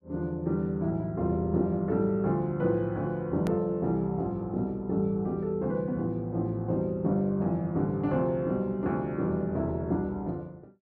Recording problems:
click at an edit; at 3.5 s

